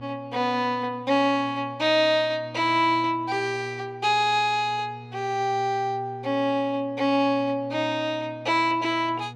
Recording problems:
hum; 60 Hz, harmonics up to 960 Hz, SNR 19 dB

